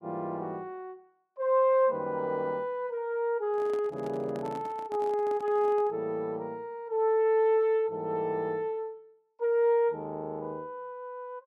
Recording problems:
microphone handling noise; from 3.5 to 6 s; peak -10 dB vs average level

